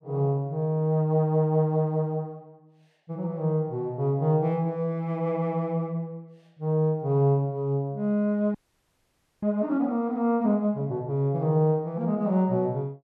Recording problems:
audio freezing; at 8.5 s for 1 s

